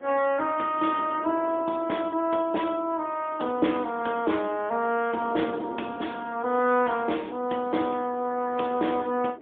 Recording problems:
telephone audio; 220 Hz to 3.4 kHz, AMR-NB, then MP3
wind noise; below 550 Hz, SNR 17 dB

